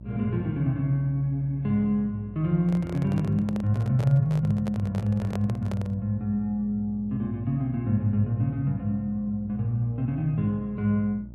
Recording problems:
hum; 60 Hz, harmonics up to 600 Hz, SNR 17 dB
handling noise; from 2.5 to 6 s; peak -6 dB vs average level

